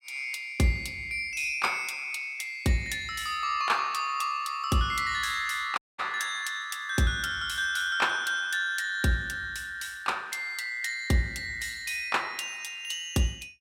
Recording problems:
dropout; at 6 s

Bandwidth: 16.5 kHz